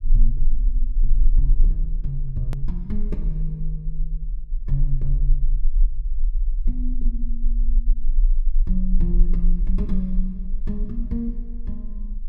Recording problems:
rumble; below 34 Hz, strongest tone 22 Hz, SNR -6 dB
click at an edit; at 2.5 s

